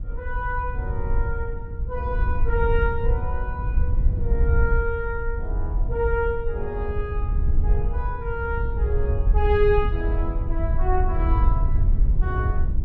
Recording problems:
wind on the microphone; below 68 Hz, SNR -3 dB

